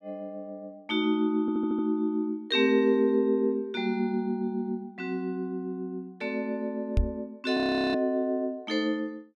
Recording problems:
stutter; at 1.5 s
microphone thump; at 7 s; peak +5 dB vs average level
audio freezing; at 7.5 s

